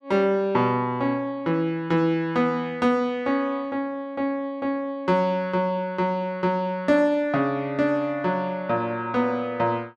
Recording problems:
none

